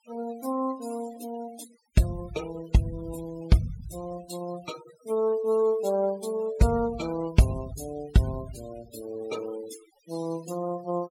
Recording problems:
denoising artefacts; signal-to-artefact ratio 18 dB

